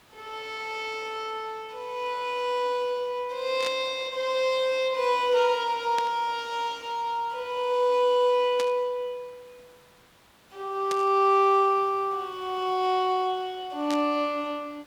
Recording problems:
hiss; SNR 29 dB
burst of static; 5 times, first at 3.5 s; peak -4 dB vs average level

